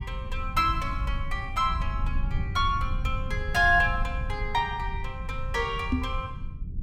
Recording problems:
low-frequency rumble; below 88 Hz, SNR 6 dB
microphone bump; at 6 s; peak +5 dB vs average level

